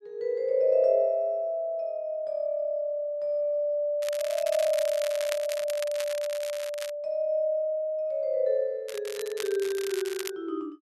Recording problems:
crackle; from 4 to 7 s and from 9 to 10 s; loose cable, SNR 11 dB

